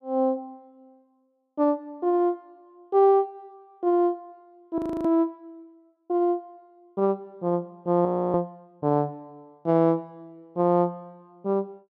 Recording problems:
audio freezing; at 5 s and at 8 s

